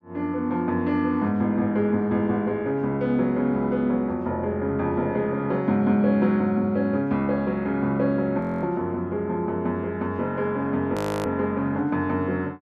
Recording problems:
frozen audio; at 8.5 s and at 11 s

